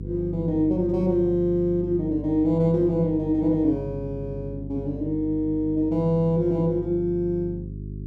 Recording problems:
hum; 50 Hz, harmonics up to 400 Hz, SNR 11 dB

